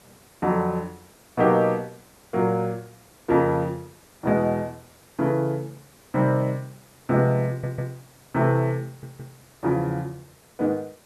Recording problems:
hiss; slope -4 dB per octave, SNR 28 dB
stutter; at 7.5 s and at 9 s

